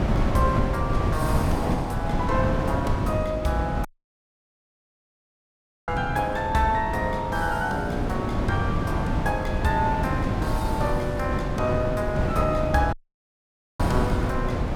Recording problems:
wind noise; below 320 Hz, SNR 0 dB
dropout; at 4 s for 2 s and at 13 s for 1 s

